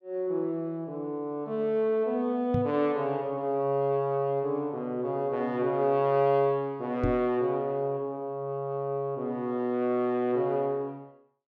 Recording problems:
knock on the microphone; at 2.5 s and at 7 s; peak +4 dB vs average level

